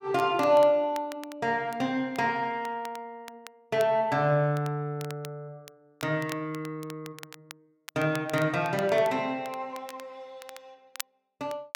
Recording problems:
crackle; vinyl, SNR 19 dB

